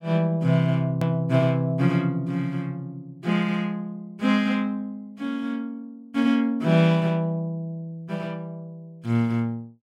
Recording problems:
hard cut with a click; at 1 s

